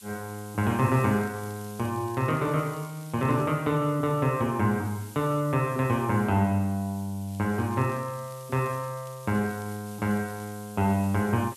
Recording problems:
background hiss; slope +4 dB per octave, SNR 20 dB
crackling; from 1 to 3.5 s, from 7.5 to 9.5 s and from 9.5 to 11 s; loose cable, SNR 27 dB

